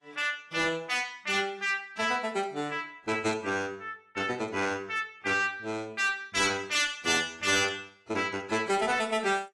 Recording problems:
codec artefacts; AAC, log-spectral distance 3 dB, nothing above 11.3 kHz
distortion; hard clipping, signal-to-distortion ratio 12 dB

